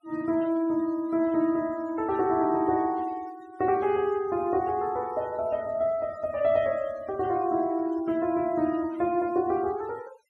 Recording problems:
denoising artefacts; signal-to-artefact ratio 24 dB

